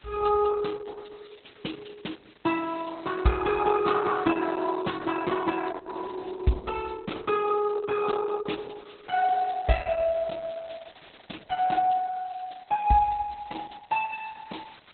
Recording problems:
lossy compression; Opus, log-spectral distance 9 dB, nothing above 4 kHz
background hiss; SNR 27 dB

